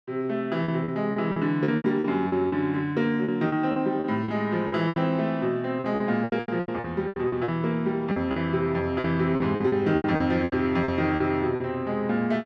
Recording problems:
lost packets; 15% of the sound replaced, filled with repeated pitch periods

